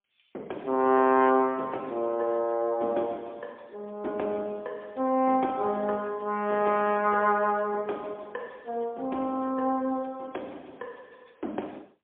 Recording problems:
phone line; 240 Hz to 3.5 kHz, AMR-NB, then MP3

